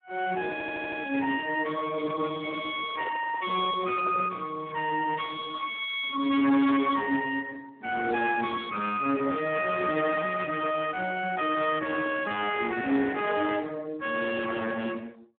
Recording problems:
telephone audio; 240 Hz to 3.7 kHz, Speex
distortion; hard clipping, signal-to-distortion ratio 13 dB
audio stuttering; at 0.5 s
microphone handling noise; from 3 to 4.5 s; peak -6 dB vs average level

